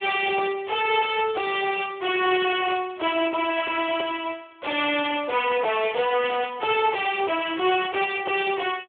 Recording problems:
telephone audio; 300 Hz to 3.5 kHz, Speex
distortion; soft clipping, signal-to-distortion ratio 7 dB

